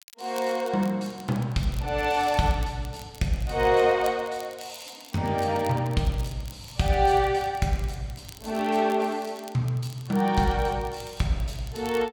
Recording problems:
crackle; vinyl, SNR 22 dB

